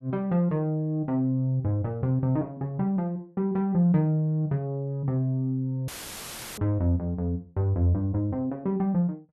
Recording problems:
dropout; at 6 s for 0.5 s; filled with static

